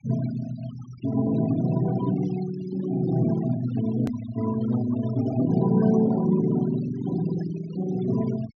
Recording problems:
treble missing; nothing above 6.4 kHz
denoising artefacts; signal-to-artefact ratio 15 dB
click at an edit; at 4 s

